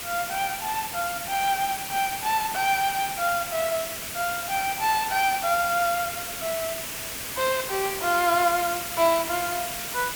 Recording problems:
hiss; slope -1 dB per octave, SNR 5 dB

